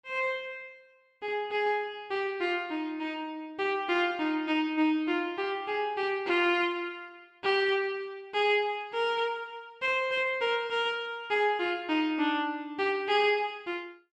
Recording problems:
none

